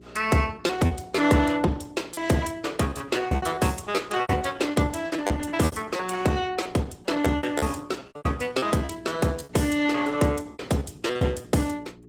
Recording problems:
codec artefacts; Opus, log-spectral distance 4 dB, nothing above 19 kHz
hum; 60 Hz, harmonics up to 420 Hz, SNR 23 dB
packet loss; 14% of the sound replaced, filled with repeated pitch periods

